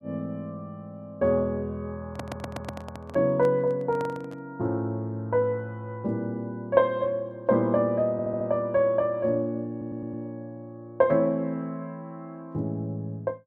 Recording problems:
handling noise; from 2 to 4.5 s; peak -4 dB vs average level
stutter; at 2 s, at 8 s and at 9.5 s

